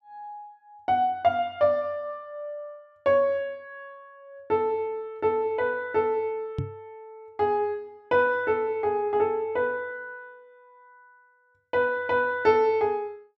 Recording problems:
knock on the microphone; at 6.5 s; peak -1 dB vs average level

